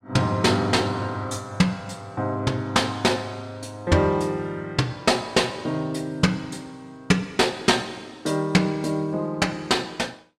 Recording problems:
none

